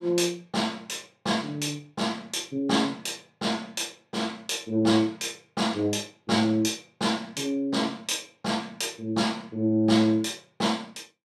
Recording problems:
none

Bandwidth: 14 kHz